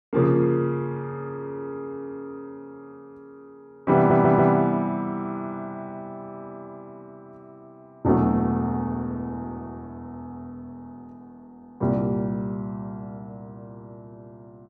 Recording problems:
audio stuttering; at 4 s

